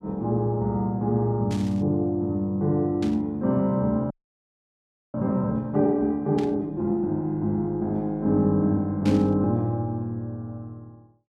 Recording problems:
burst of static; 4 times, first at 1.5 s; peak -9 dB vs average level
audio freezing; at 4 s for 1 s

